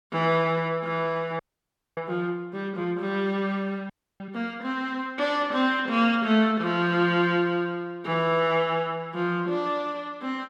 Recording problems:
audio freezing; at 1.5 s for 0.5 s and at 4 s

